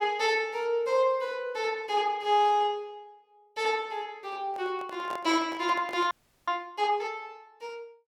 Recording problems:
handling noise; from 4.5 to 6 s; peak -8 dB vs average level
frozen audio; at 6 s

